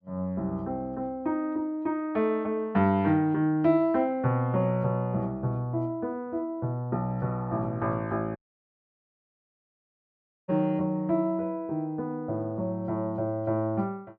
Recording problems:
dropout; at 8.5 s for 2 s

